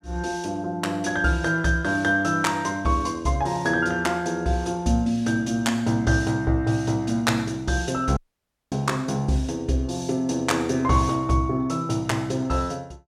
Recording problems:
dropout; at 8 s for 0.5 s

